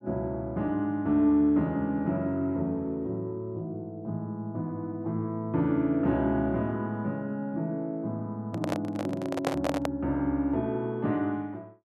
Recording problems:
microphone handling noise; from 8.5 to 10 s; peak +4 dB vs average level

